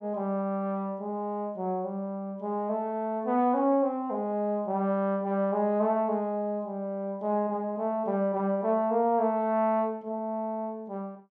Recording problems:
none

